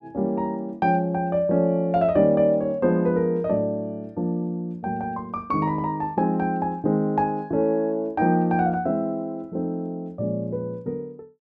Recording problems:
none

